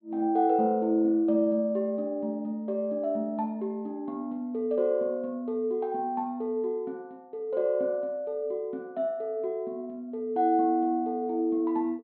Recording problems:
treble missing; nothing above 4.3 kHz

